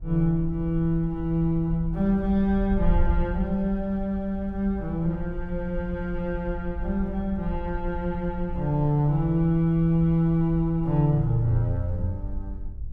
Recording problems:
wind on the microphone; below 62 Hz, SNR 10 dB

